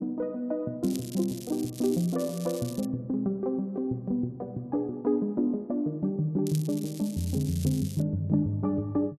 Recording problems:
crackle; from 1 to 3 s and from 6.5 to 8 s; loose cable, SNR 15 dB

